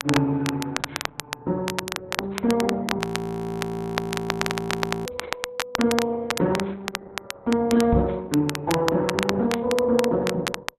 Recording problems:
lossy compression; Opus, log-spectral distance 2 dB, nothing above 13.1 kHz
crackling; vinyl, SNR 6 dB
frozen audio; at 3 s for 2 s
knock on the microphone; at 8 s; peak +5 dB vs average level

